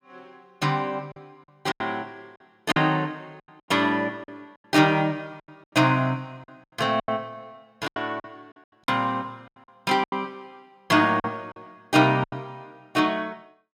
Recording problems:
lost packets; 9% of the sound replaced, filled with silence

